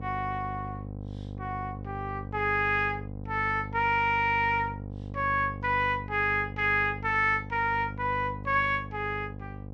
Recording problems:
electrical hum; 50 Hz, harmonics up to 800 Hz, SNR 11 dB

